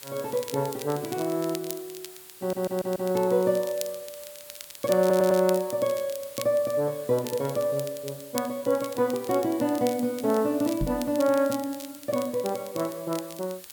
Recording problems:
background hiss; slope 0 dB per octave, SNR 18 dB
crackling; vinyl, SNR 15 dB
stutter; at 2.5 s and at 5 s
knock on the microphone; at 11 s; peak 0 dB vs average level

